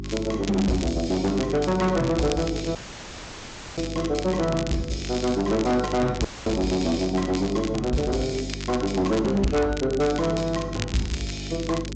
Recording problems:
low-pass filter; nothing above 8 kHz
distorted audio; hard clipping, uneven, signal-to-distortion ratio 10 dB
hum; 50 Hz, harmonics up to 400 Hz, SNR 10 dB
crackling; vinyl, SNR 13 dB
dropout; at 3 s for 1 s and at 6.5 s

